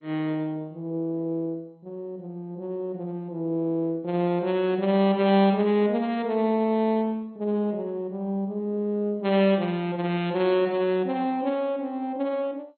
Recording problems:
codec artefacts; MP2, log-spectral distance 2 dB, nothing above 4.1 kHz

